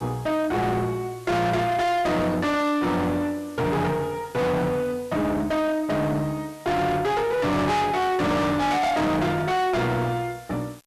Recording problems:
distortion; soft clipping, signal-to-distortion ratio 6 dB
background hiss; slope 0 dB per octave, SNR 24 dB

